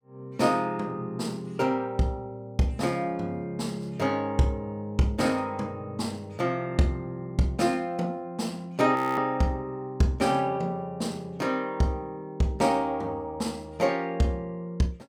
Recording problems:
frozen audio; at 9 s

